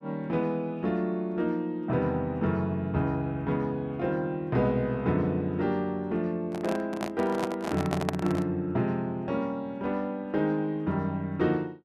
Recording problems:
handling noise; from 6.5 to 8.5 s; peak +3 dB vs average level

